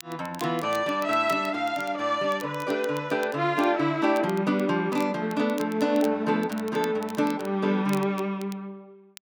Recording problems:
crackle; vinyl, SNR 21 dB

